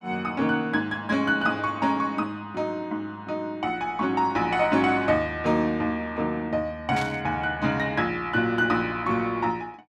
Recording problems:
static burst; at 7 s; peak -7 dB vs average level

